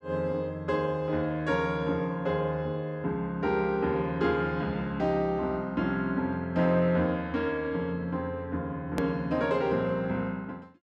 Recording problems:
click at an edit; at 9 s

